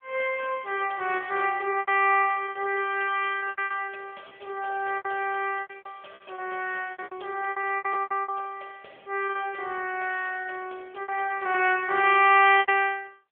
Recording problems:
telephone audio; 280 Hz to 2.8 kHz, AMR-NB
lost packets; 13% of the sound replaced, filled with repeated pitch periods

